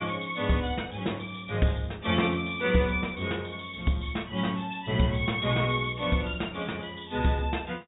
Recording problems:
treble missing; nothing above 4 kHz

